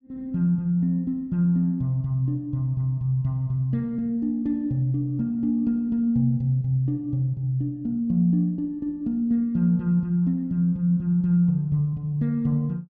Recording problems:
none

